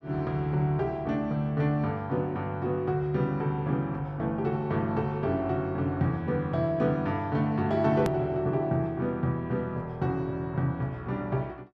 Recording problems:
hard cut with a click; at 8 s

